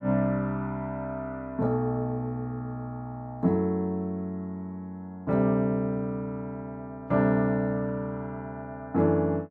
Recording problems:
none

